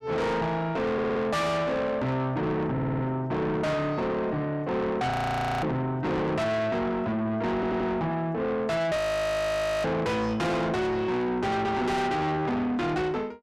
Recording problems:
distortion; soft clipping, signal-to-distortion ratio 6 dB
stutter; at 1 s, at 2.5 s and at 7.5 s
audio freezing; at 5 s for 0.5 s and at 9 s for 1 s

